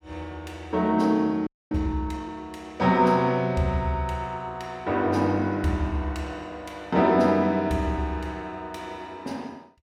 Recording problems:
audio freezing; at 1.5 s

